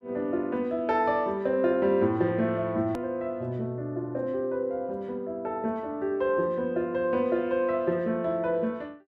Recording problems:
hard cut with a click; at 3 s

